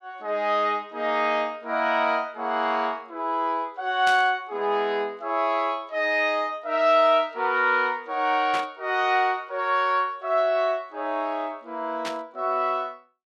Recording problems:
static burst; at 4 s, at 8.5 s and at 12 s; peak -4 dB vs average level

